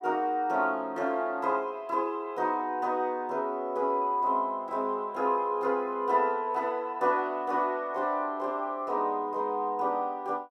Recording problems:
none

